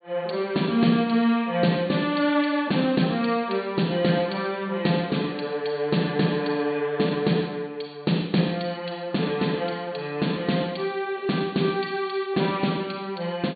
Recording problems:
treble cut off; nothing above 4.5 kHz

